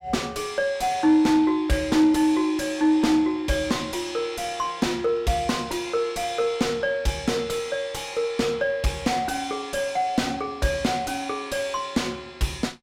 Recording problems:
distorted audio; soft clipping, signal-to-distortion ratio 6 dB

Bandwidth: 16 kHz